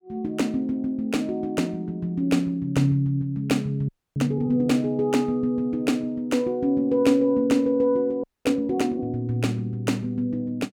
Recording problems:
audio freezing; at 4 s and at 8 s

